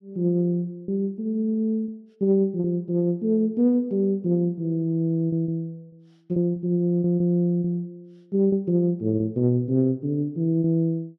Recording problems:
lost packets; 5% of the sound replaced, filled with repeated pitch periods

